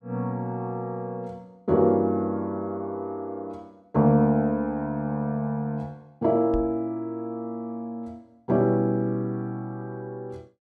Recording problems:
microphone bump; at 6.5 s; peak -3 dB vs average level

